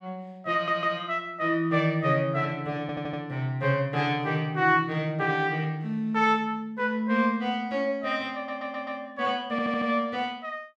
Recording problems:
audio stuttering; 4 times, first at 0.5 s

